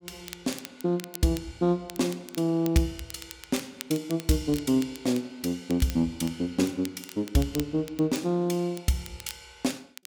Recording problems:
crackle; vinyl, SNR 16 dB

